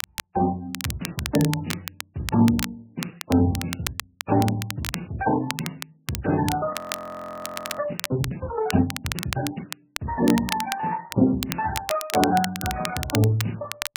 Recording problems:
codec artefacts; Speex, then MP3, log-spectral distance 4 dB
crackling; vinyl, SNR 8 dB
audio freezing; at 6.5 s for 1 s

